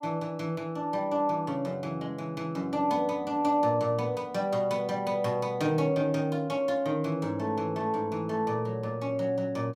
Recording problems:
none

